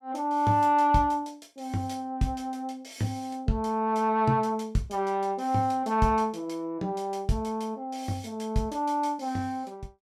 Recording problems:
none

